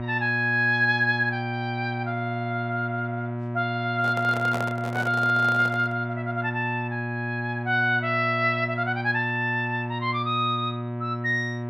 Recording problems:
hum; 60 Hz, harmonics up to 1.9 kHz, SNR 6 dB
handling noise; from 4 to 6 s; peak -3 dB vs average level

